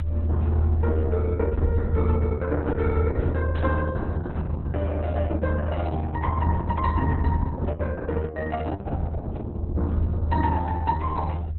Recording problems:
lossy codec; Opus, log-spectral distance 2 dB, nothing above 4.1 kHz
low-frequency rumble; below 82 Hz, strongest tone 80 Hz, SNR -5 dB
burst of static; at 3.5 s; peak -12 dB vs average level

